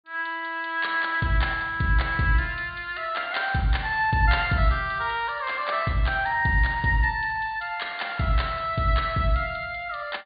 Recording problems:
low-pass filter; nothing above 4.7 kHz

